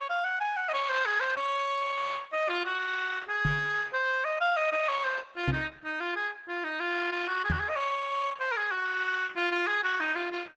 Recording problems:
lossy compression; Opus, log-spectral distance 5 dB, nothing above 7.1 kHz
microphone bump; at 3.5 s, at 5.5 s and at 7.5 s; peak +3 dB vs average level

